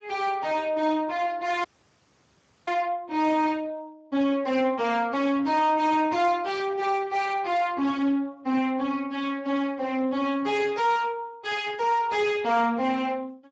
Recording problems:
lossy codec; Speex, log-spectral distance 4 dB, nothing above 7.3 kHz
distortion; soft clipping, signal-to-distortion ratio 10 dB
dropout; at 1.5 s for 1 s

